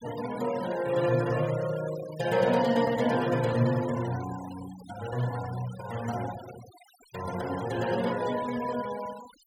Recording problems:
noise reduction artefacts; signal-to-artefact ratio 15 dB

